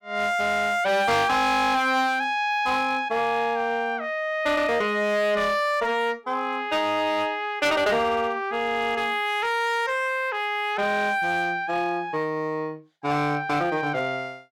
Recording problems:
distortion; hard clipping, uneven, signal-to-distortion ratio 12 dB

